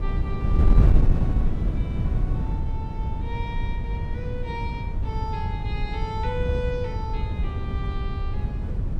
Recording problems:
wind on the microphone; below 100 Hz, SNR -10 dB

